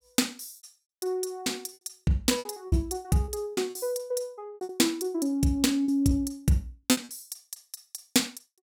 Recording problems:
lost packets; 9% of the sound replaced, filled with repeated pitch periods

